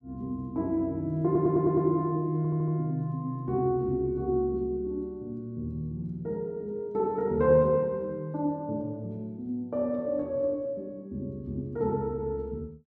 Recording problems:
audio stuttering; at 1.5 s and at 2.5 s

